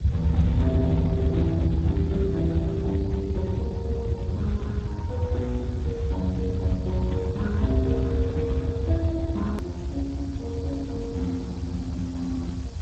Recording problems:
lossy compression; Speex, log-spectral distance 2 dB, nothing above 13.1 kHz
background hiss; SNR 23 dB
rumble; below 120 Hz, SNR 0 dB
click at an edit; at 9.5 s

